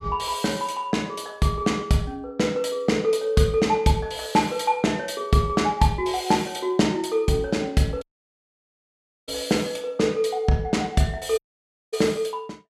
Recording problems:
audio cutting out; at 8 s for 1.5 s and at 11 s for 0.5 s

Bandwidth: 14 kHz